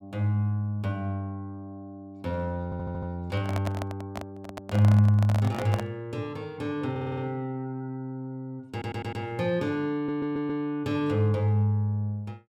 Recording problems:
audio stuttering; 4 times, first at 2.5 s
handling noise; from 3.5 to 6 s; peak -1 dB vs average level

